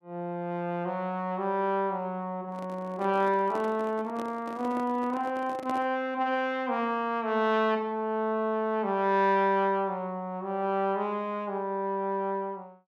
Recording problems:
microphone handling noise; from 2.5 to 6 s; peak -5 dB vs average level

